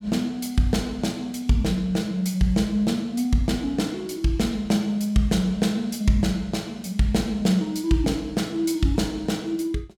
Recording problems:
none

